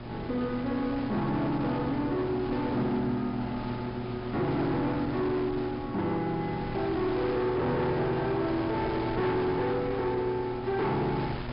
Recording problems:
treble missing; nothing above 5.5 kHz
distortion; hard clipping, signal-to-distortion ratio 10 dB
hum; 60 Hz, harmonics up to 1.1 kHz, SNR 11 dB
wind on the microphone; below 1.3 kHz, SNR 11 dB

